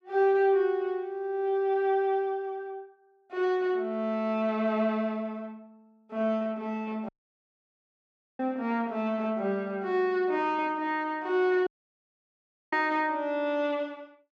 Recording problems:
audio cutting out; at 7 s for 1.5 s and at 12 s for 1 s

